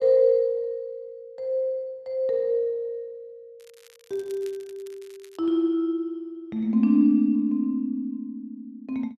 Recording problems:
crackle; from 3.5 to 5.5 s; loose cable, SNR 28 dB

